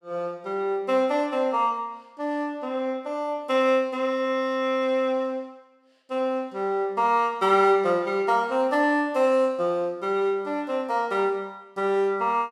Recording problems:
none

